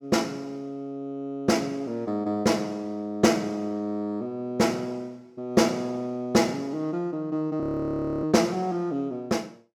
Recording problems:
audio freezing; at 7.5 s for 0.5 s

